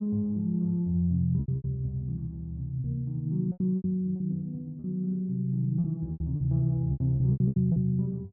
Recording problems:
lost packets; 11% of the sound replaced, filled with repeated pitch periods

